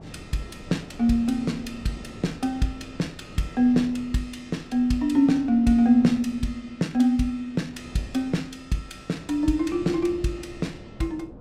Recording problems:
wind noise; below 380 Hz, SNR 18 dB

